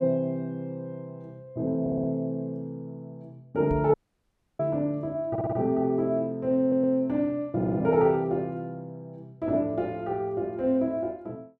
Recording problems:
audio stuttering; 4 times, first at 2 s
microphone thump; at 3.5 s; peak -2 dB vs average level
audio cutting out; at 4 s for 0.5 s

